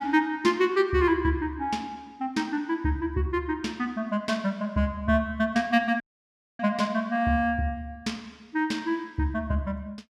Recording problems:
dropout; at 6 s for 0.5 s

